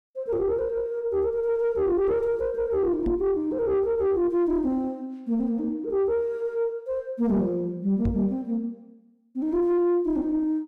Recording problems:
distorted audio; soft clipping, signal-to-distortion ratio 9 dB
microphone bump; at 3 s and at 8 s; peak +2 dB vs average level

